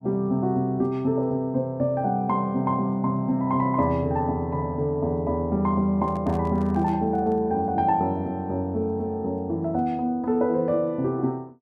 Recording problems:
microphone handling noise; from 6 to 7.5 s; peak -12 dB vs average level

